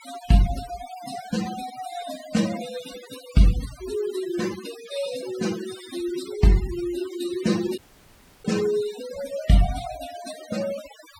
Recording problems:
denoising artefacts; signal-to-artefact ratio 13 dB
audio cutting out; at 8 s for 0.5 s

